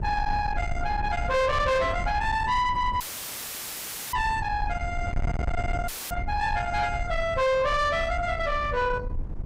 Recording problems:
distorted audio; soft clipping, signal-to-distortion ratio 7 dB
wind on the microphone; below 240 Hz, SNR 7 dB
dropout; at 3 s for 1 s and at 6 s; filled with static

